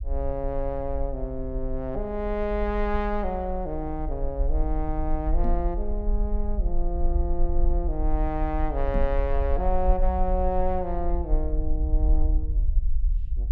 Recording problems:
rumble; below 50 Hz, SNR -1 dB
microphone thump; at 5.5 s and at 9 s; peak +1 dB vs average level

